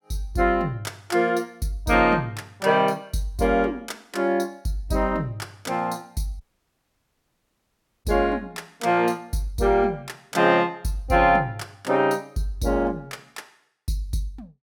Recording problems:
audio cutting out; at 6.5 s for 1.5 s

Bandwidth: 17 kHz